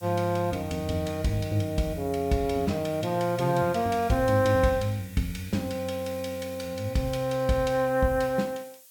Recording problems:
background hiss; slope +3 dB per octave, SNR 22 dB

